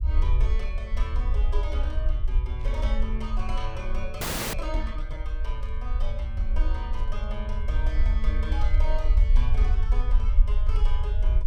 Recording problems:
rumble; below 54 Hz, SNR -10 dB
static burst; 4 times, first at 2.5 s; peak -13 dB vs average level
frozen audio; at 4 s

